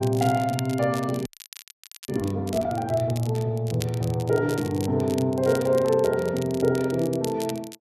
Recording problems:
crackle; vinyl, SNR 16 dB
frozen audio; at 1.5 s for 1 s

